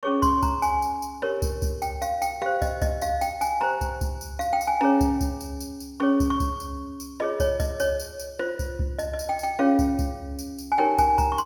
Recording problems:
none

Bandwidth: 18 kHz